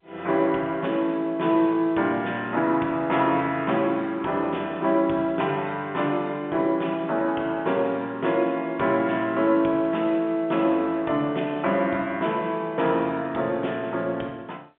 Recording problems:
telephone audio; 190 Hz to 3.5 kHz, G.711

